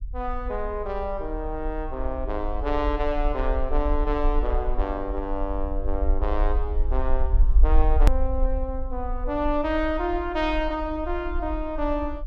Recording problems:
low-frequency rumble; below 48 Hz, SNR 1 dB
hard cut with a click; at 8 s

